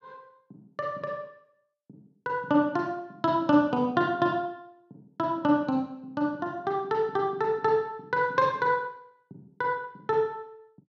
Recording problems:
none

